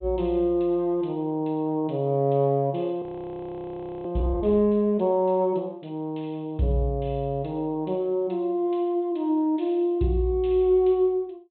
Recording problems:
treble cut off; nothing above 4 kHz
frozen audio; at 3 s for 1 s

